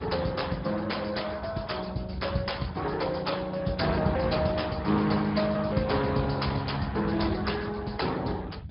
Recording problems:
low-pass filter; nothing above 5.2 kHz
codec artefacts; Speex, log-spectral distance 5 dB
low-frequency rumble; below 130 Hz, SNR 11 dB

